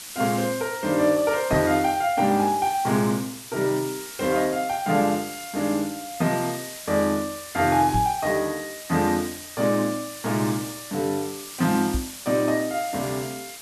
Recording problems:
background hiss; slope +2 dB per octave, SNR 12 dB
microphone bump; at 1.5 s, at 8 s and at 12 s; peak +1 dB vs average level

